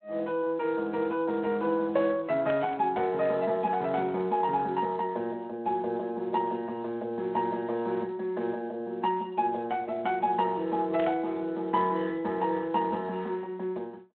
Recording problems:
phone line; 240 Hz to 3.7 kHz, Speex
burst of static; at 2.5 s and at 11 s; peak -7 dB vs average level

